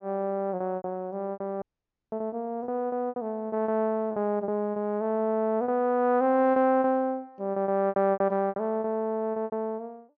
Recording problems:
treble missing; nothing above 7 kHz
lost packets; 13% of the sound replaced, filled with repeated pitch periods
audio cutting out; at 1.5 s for 0.5 s

